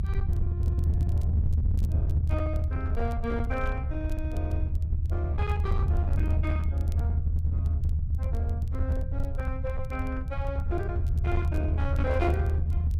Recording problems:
distorted audio; hard clipping, uneven, signal-to-distortion ratio 11 dB
rumble; below 80 Hz, SNR -8 dB
crackle; vinyl, SNR 25 dB

